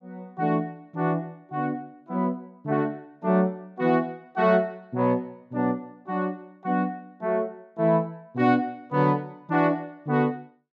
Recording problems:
none

